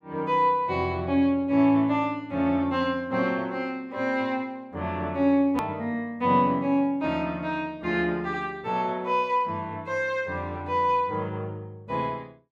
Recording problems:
edit click; at 5.5 s

